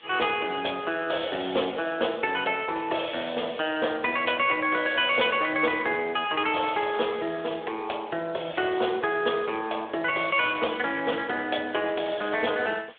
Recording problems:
phone line; 300 Hz to 3.5 kHz, Speex
background hiss; SNR 27 dB

